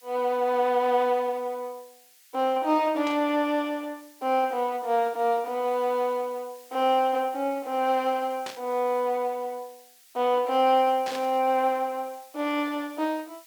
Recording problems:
background hiss; SNR 26 dB
static burst; at 3 s, at 8.5 s and at 11 s; peak -7 dB vs average level

